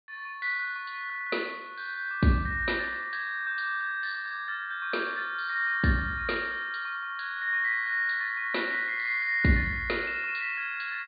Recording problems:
treble missing; nothing above 4.7 kHz

